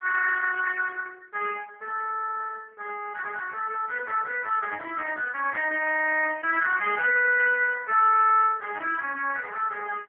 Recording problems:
telephone audio; 410 Hz to 2.9 kHz, AMR-NB

